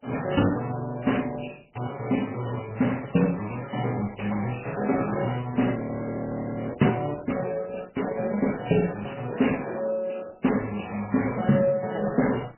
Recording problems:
codec artefacts; Opus, then MP3, log-spectral distance 8 dB, nothing above 3 kHz
frozen audio; at 6 s for 1 s

